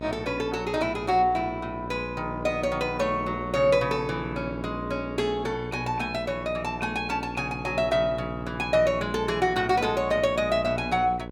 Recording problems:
electrical hum; 60 Hz, harmonics up to 1.5 kHz, SNR 10 dB

